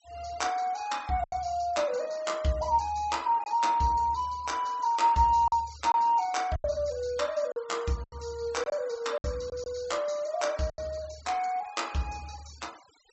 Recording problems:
low-pass filter; nothing above 7.9 kHz
denoising artefacts; signal-to-artefact ratio 22 dB
packet loss; 5% of the sound replaced, filled with silence

